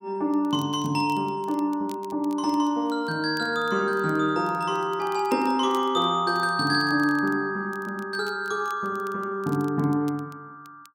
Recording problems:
crackle; vinyl, SNR 27 dB

